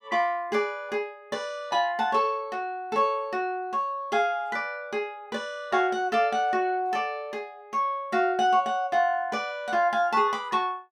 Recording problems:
none

